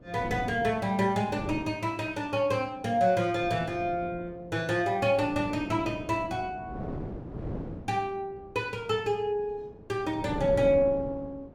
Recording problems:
wind on the microphone; below 380 Hz, SNR 11 dB

